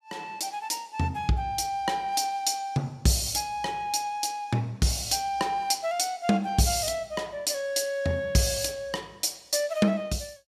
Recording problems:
none

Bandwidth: 14.5 kHz